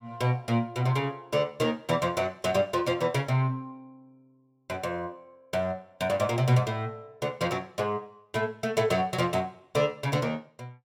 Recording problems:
none

